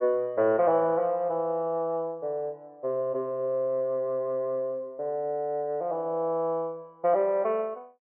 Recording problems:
treble cut off; nothing above 3.1 kHz

